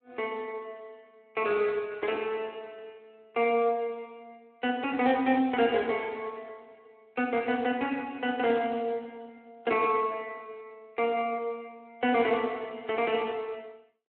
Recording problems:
phone line; 240 Hz to 3.7 kHz, Speex

